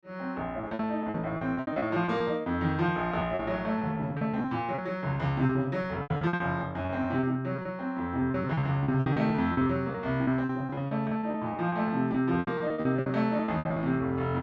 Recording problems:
packet loss; 18% of the sound replaced, filled with repeated pitch periods

